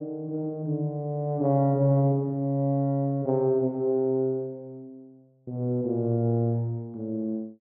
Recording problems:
none

